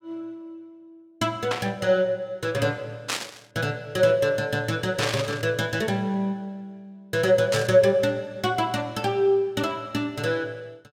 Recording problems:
burst of static; 4 times, first at 1.5 s; peak +2 dB vs average level

